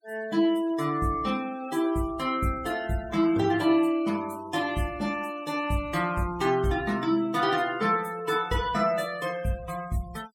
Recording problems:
noise reduction artefacts; signal-to-artefact ratio 20 dB

